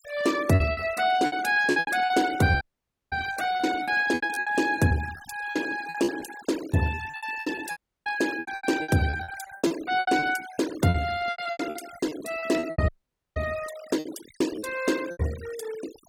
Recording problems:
denoising artefacts; signal-to-artefact ratio 16 dB
packet loss; 18% of the sound replaced, filled with repeated pitch periods
dropout; at 2.5 s for 0.5 s, at 8 s and at 13 s

